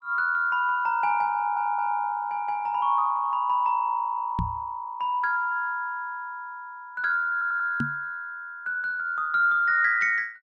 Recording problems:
stutter; at 1.5 s and at 7.5 s
microphone thump; at 4.5 s and at 8 s; peak 0 dB vs average level

